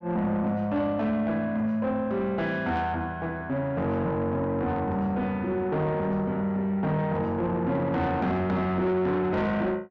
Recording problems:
distorted audio; soft clipping, signal-to-distortion ratio 11 dB

